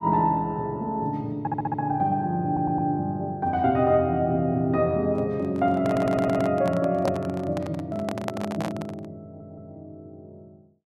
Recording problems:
audio stuttering; 4 times, first at 1.5 s
handling noise; from 5 to 9 s; peak -1 dB vs average level

